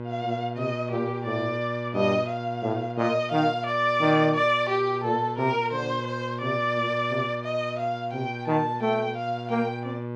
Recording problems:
hum; 60 Hz, harmonics up to 1.6 kHz, SNR 9 dB

